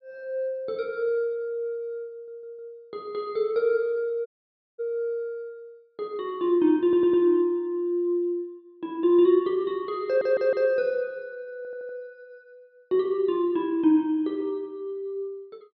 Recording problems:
treble missing; nothing above 5.5 kHz
audio stuttering; 4 times, first at 2 s
dropout; at 4.5 s for 0.5 s

